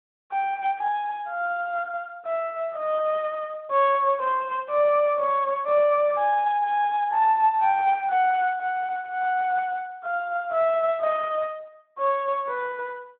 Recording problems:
phone line; 370 Hz to 3.4 kHz, Speex

